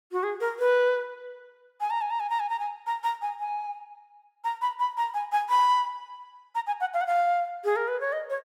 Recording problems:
none

